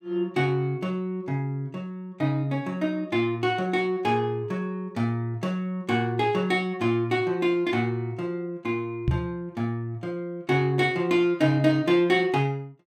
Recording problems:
knock on the microphone; at 9 s; peak +5 dB vs average level

